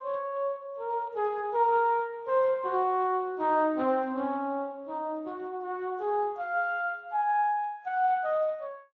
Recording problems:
codec artefacts; MP3, then Speex, log-spectral distance 2 dB

